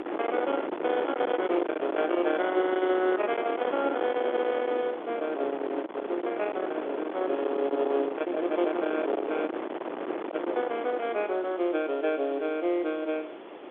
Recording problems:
telephone audio; 280 Hz to 3.6 kHz, G.711
distortion; soft clipping, signal-to-distortion ratio 13 dB
background hiss; SNR 29 dB
wind on the microphone; below 810 Hz, SNR 6 dB

